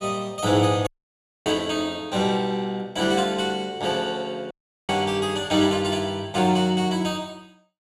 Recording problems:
dropout; at 1 s for 0.5 s and at 4.5 s

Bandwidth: 14.5 kHz